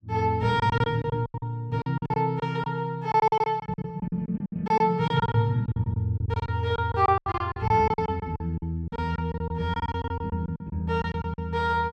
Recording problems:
lost packets; 17% of the sound replaced, filled with silence

